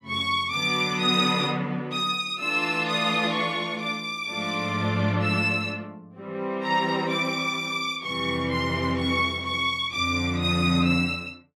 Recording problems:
none

